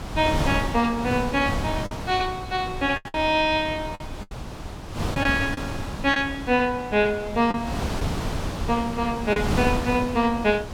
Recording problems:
wind on the microphone; below 650 Hz, SNR 7 dB
lost packets; 4% of the sound replaced, filled with the last packet

